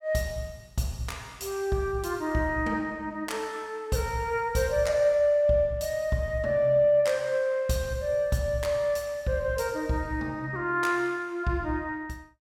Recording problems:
none

